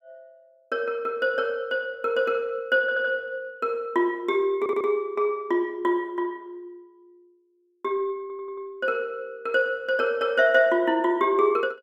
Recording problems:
audio stuttering; at 3 s, at 4.5 s and at 8 s

